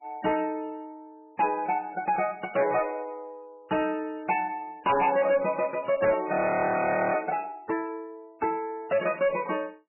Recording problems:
lossy codec; MP3, log-spectral distance 3 dB, nothing above 2.5 kHz
distortion; hard clipping, signal-to-distortion ratio 10 dB
audio freezing; at 6.5 s for 1 s

